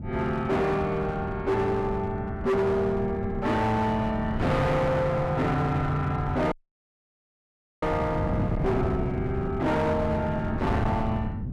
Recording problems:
distortion; hard clipping, uneven, signal-to-distortion ratio 8 dB
wind on the microphone; below 220 Hz, SNR 6 dB
audio cutting out; at 6.5 s for 1.5 s

